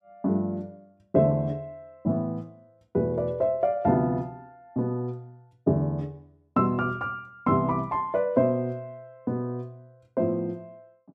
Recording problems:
none

